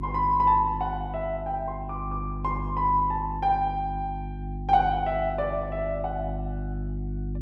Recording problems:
electrical hum; 50 Hz, harmonics up to 350 Hz, SNR 8 dB

